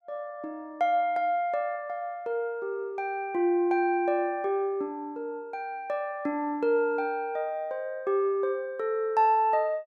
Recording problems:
none

